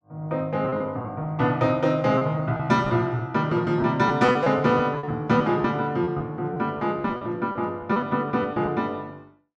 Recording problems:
lost packets; 8% of the sound replaced, filled with repeated pitch periods

